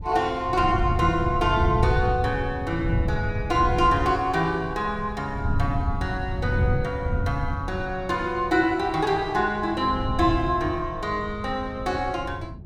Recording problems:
wind noise; below 130 Hz, SNR 5 dB

